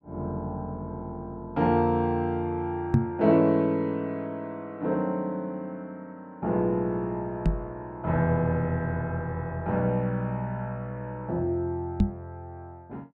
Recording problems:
microphone bump; at 3 s, at 7.5 s and at 12 s; peak +10 dB vs average level

